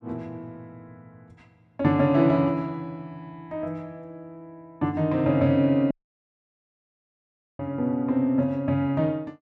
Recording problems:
audio cutting out; at 6 s for 1.5 s

